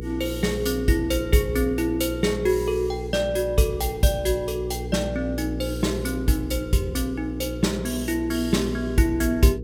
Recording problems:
hum; 60 Hz, harmonics up to 480 Hz, SNR 9 dB

